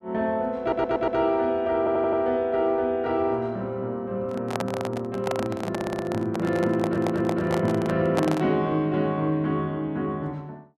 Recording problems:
audio stuttering; 4 times, first at 0.5 s
microphone handling noise; from 4 to 8.5 s; peak +2 dB vs average level

